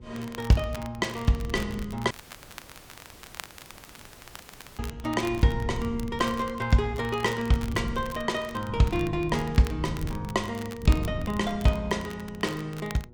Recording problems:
mains hum; 60 Hz, harmonics up to 960 Hz, SNR 25 dB
wind noise; below 170 Hz, SNR 11 dB
crackling; vinyl, SNR 18 dB
audio cutting out; at 2 s for 2.5 s

